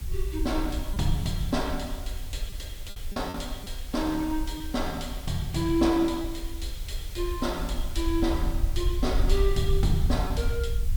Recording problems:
background hiss; slope -1 dB per octave, SNR 16 dB
rumble; below 58 Hz, SNR 4 dB
packet loss; 3% of the sound replaced, filled with repeated pitch periods

